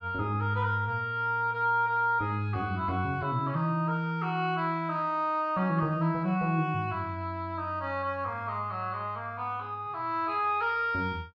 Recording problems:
none

